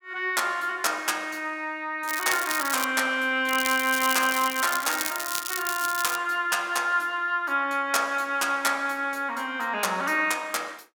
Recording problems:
crackle; at 2 s and from 3.5 to 6 s; loose cable, SNR 6 dB

